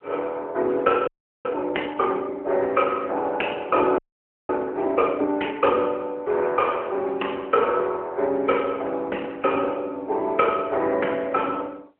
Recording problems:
telephone audio; 300 Hz to 3.1 kHz, AMR-NB
frozen audio; at 1 s and at 4 s for 0.5 s

